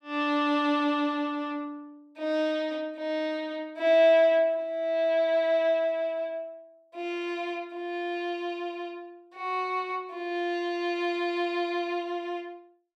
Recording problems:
none

